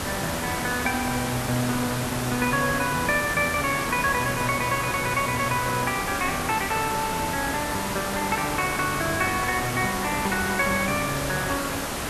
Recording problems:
background hiss; slope -4 dB per octave, SNR 3 dB

